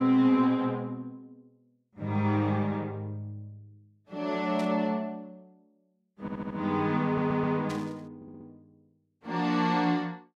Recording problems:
burst of static; at 4.5 s and at 7.5 s; peak -10 dB vs average level
stutter; at 6 s, at 7 s and at 8 s

